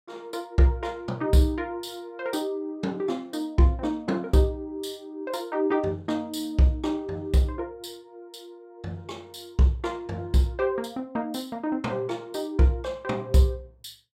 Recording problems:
none

